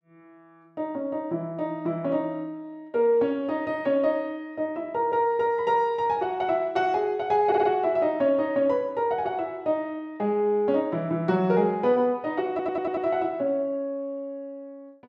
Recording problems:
audio stuttering; at 7.5 s and at 13 s

